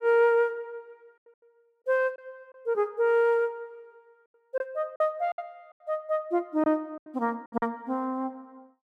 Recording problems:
packet loss; 5% of the sound replaced, filled with silence

